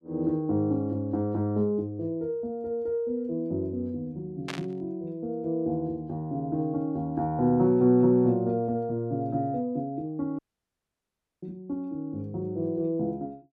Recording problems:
burst of static; at 4.5 s; peak -2 dB vs average level
dropout; at 10 s for 1 s

